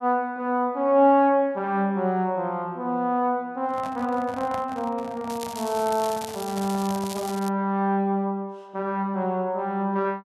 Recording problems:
microphone handling noise; from 3.5 to 7.5 s; peak -6 dB vs average level
crackle; from 5.5 to 7.5 s; loose cable, SNR 14 dB

